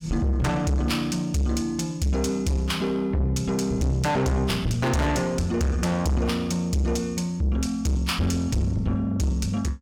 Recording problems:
distortion; soft clipping, signal-to-distortion ratio 6 dB

